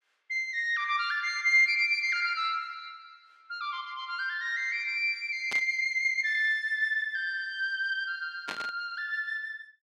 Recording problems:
static burst; at 5.5 s and at 8.5 s; peak -5 dB vs average level

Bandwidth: 14 kHz